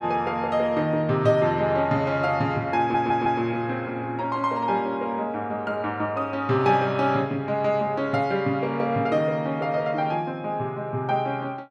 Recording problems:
stutter; at 3 s

